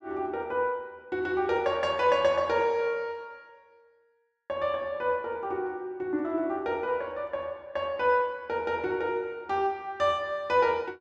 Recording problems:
none

